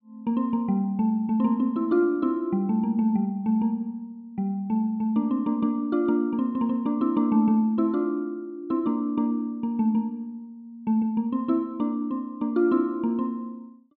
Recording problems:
none

